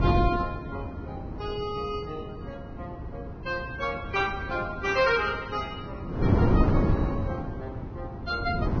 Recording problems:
codec artefacts; Vorbis, log-spectral distance 2 dB, nothing above 5.5 kHz
wind noise; below 300 Hz, SNR 1 dB

